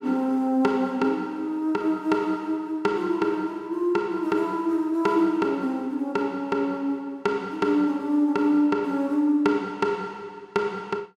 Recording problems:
none

